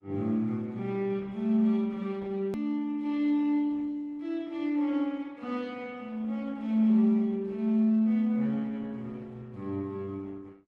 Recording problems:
lossy codec; Opus, log-spectral distance 2 dB, nothing above 16.1 kHz
click at an edit; at 2.5 s

